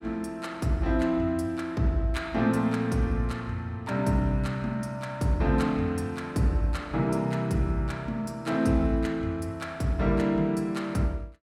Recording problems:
none

